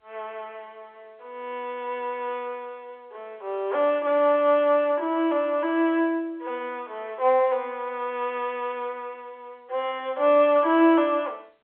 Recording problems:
phone line; 300 Hz to 3.6 kHz, G.711

